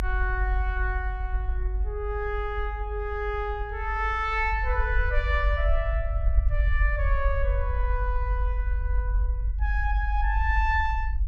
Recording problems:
low-frequency rumble; below 54 Hz, strongest tone 48 Hz, SNR -1 dB

